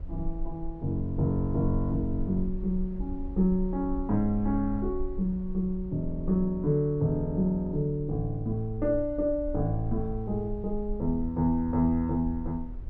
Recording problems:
rumble; below 48 Hz, strongest tone 20 Hz, SNR 11 dB

